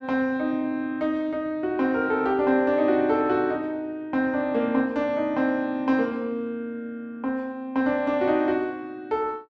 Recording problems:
none

